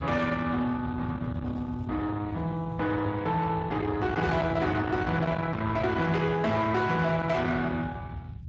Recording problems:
lossy compression; Speex, log-spectral distance 3 dB, nothing above 7.3 kHz
distortion; soft clipping, signal-to-distortion ratio 10 dB
rumble; below 590 Hz, SNR 9 dB

